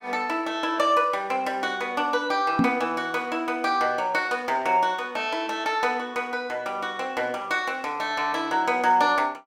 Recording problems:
knock on the microphone; at 2.5 s; peak +5 dB vs average level

